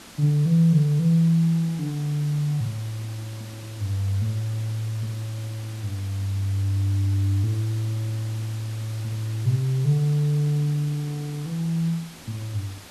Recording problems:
background hiss; slope -2 dB per octave, SNR 18 dB

